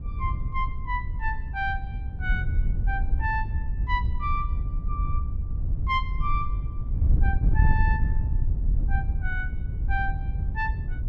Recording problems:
wind on the microphone; below 80 Hz, SNR -4 dB

